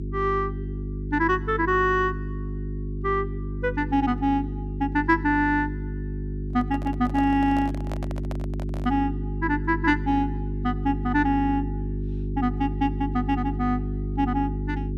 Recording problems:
hum; 50 Hz, harmonics up to 400 Hz, SNR 6 dB
microphone handling noise; from 6.5 to 9 s; peak -7 dB vs average level

